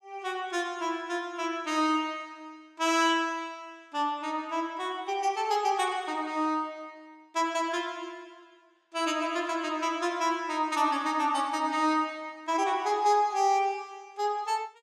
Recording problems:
none

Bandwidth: 15 kHz